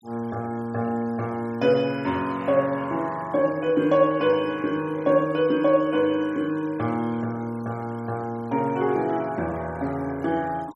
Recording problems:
denoising artefacts; signal-to-artefact ratio 25 dB

